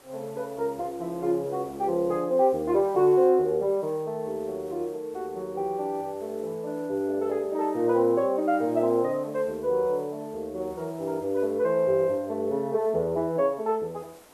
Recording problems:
hiss; slope -4 dB per octave, SNR 27 dB

